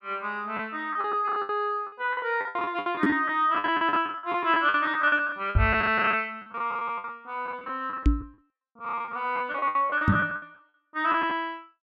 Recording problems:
packet loss; 19% of the sound replaced, filled with the last packet
knock on the microphone; 4 times, first at 3 s; peak +8 dB vs average level

